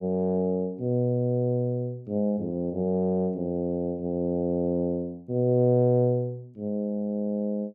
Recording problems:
none

